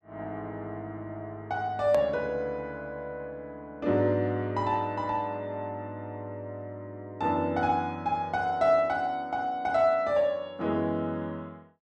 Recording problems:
edit click; at 2 s

